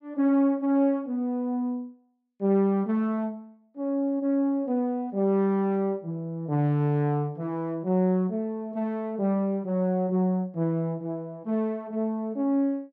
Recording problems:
none

